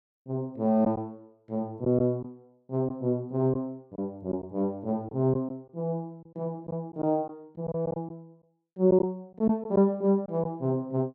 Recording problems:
packet loss; 4% of the sound replaced, filled with silence

